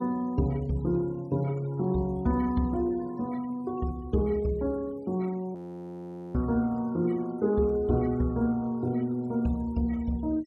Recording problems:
denoising artefacts; signal-to-artefact ratio 27 dB
frozen audio; at 5.5 s for 1 s

